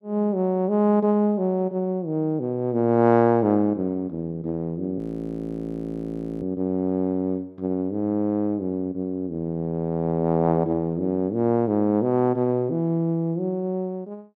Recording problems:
audio freezing; at 5 s for 1.5 s

